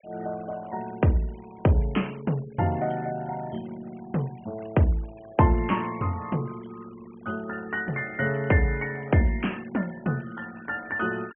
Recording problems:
low-pass filter; nothing above 3.1 kHz
noise reduction artefacts; signal-to-artefact ratio 23 dB

